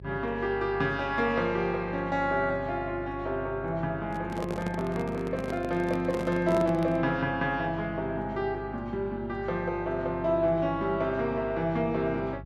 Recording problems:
hum; 50 Hz, harmonics up to 400 Hz, SNR 15 dB
microphone handling noise; from 4 to 7 s; peak -1 dB vs average level

